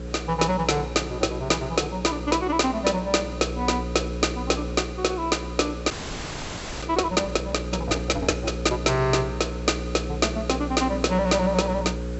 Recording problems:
treble cut off; nothing above 7.8 kHz
hum; 60 Hz, harmonics up to 540 Hz, SNR 8 dB
hiss; SNR 24 dB
audio freezing; at 6 s for 1 s

